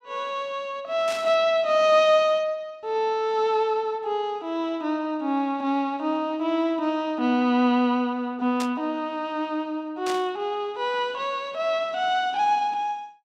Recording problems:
static burst; at 1 s, at 8.5 s and at 10 s; peak -5 dB vs average level

